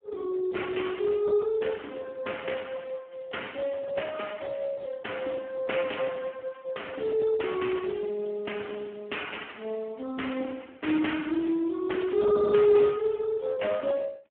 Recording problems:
telephone audio; 240 Hz to 3.3 kHz, Speex

